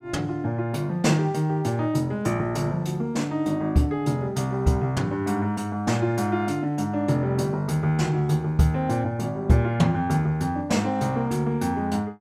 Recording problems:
none

